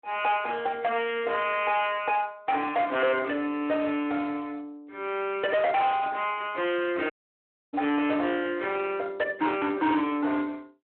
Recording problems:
telephone audio; 260 Hz to 3.2 kHz, Speex
distortion; hard clipping, signal-to-distortion ratio 8 dB
audio cutting out; at 7 s for 0.5 s

